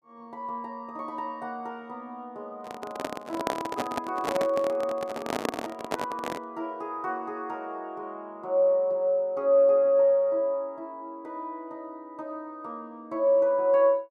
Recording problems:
microphone handling noise; from 2.5 to 6.5 s; peak +2 dB vs average level

